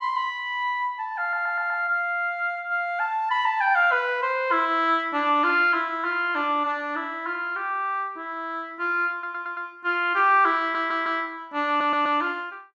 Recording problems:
audio stuttering; 4 times, first at 1 s

